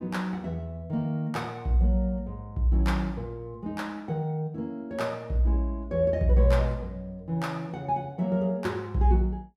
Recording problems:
none

